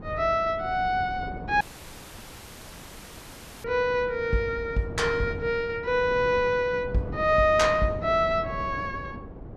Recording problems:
wind on the microphone; below 380 Hz, SNR 14 dB
dropout; at 1.5 s for 2 s

